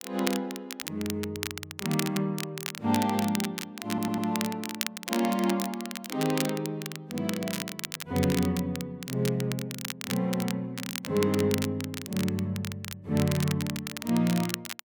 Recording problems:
crackling; vinyl, SNR 7 dB
audio stuttering; at 4 s

